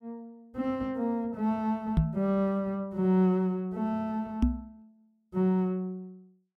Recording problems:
microphone bump; at 2 s and at 4.5 s; peak +8 dB vs average level

